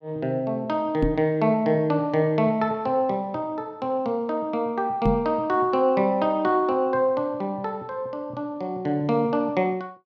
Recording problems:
knock on the microphone; at 1 s and at 5 s; peak +5 dB vs average level

